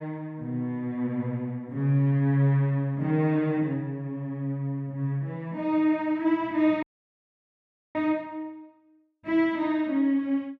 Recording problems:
audio cutting out; at 7 s for 1 s

